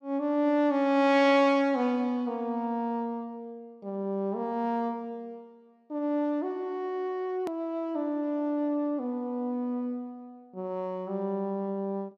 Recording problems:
hard cut with a click; at 7.5 s

